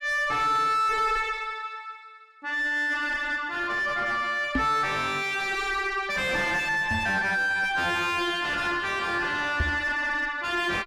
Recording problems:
distorted audio; soft clipping, signal-to-distortion ratio 3 dB
microphone thump; at 4.5 s, at 7 s and at 9.5 s; peak +4 dB vs average level

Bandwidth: 14.5 kHz